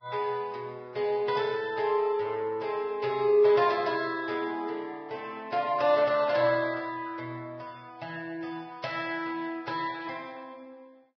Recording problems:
lossy codec; Vorbis, log-spectral distance 3 dB, nothing above 5 kHz

